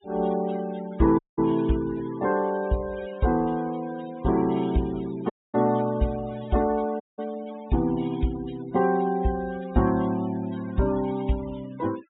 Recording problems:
treble cut off; nothing above 4 kHz
noise reduction artefacts; signal-to-artefact ratio 19 dB
dropout; at 1 s, at 5.5 s and at 7 s

